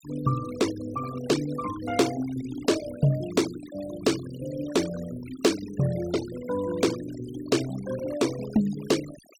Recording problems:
noise reduction artefacts; signal-to-artefact ratio 13 dB

